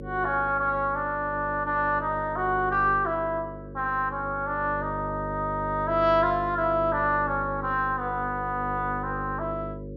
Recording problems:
hum; 50 Hz, harmonics up to 550 Hz, SNR 11 dB

